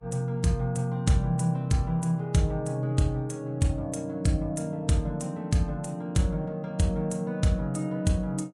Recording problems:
lossy compression; Vorbis, log-spectral distance 2 dB, nothing above 11 kHz

